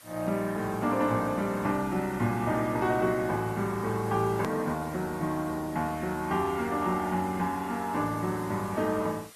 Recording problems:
lossy codec; Opus, log-spectral distance 6 dB, nothing above 13.1 kHz
hiss; SNR 21 dB
hard cut with a click; at 4.5 s

